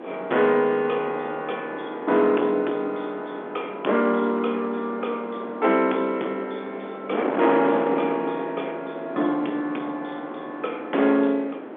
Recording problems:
telephone audio; 220 Hz to 3.5 kHz, G.711
distortion; hard clipping, uneven, signal-to-distortion ratio 12 dB
wind on the microphone; below 790 Hz, SNR 9 dB

